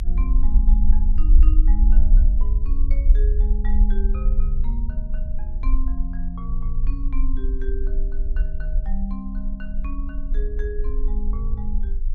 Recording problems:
low-frequency rumble; below 44 Hz, strongest tone 20 Hz, SNR -12 dB

